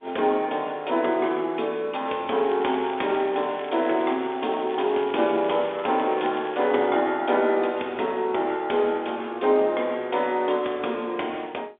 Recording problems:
phone line; 300 Hz to 3.6 kHz, G.711
crackling; from 2.5 to 5.5 s and from 5.5 to 7 s; loose cable, SNR 19 dB

